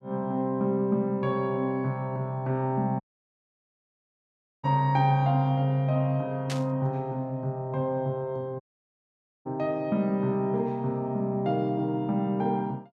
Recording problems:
audio cutting out; at 3 s for 1.5 s and at 8.5 s for 1 s
static burst; at 6.5 s; peak -4 dB vs average level

